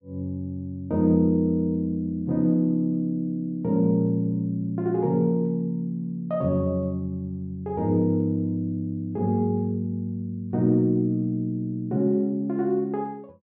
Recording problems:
none

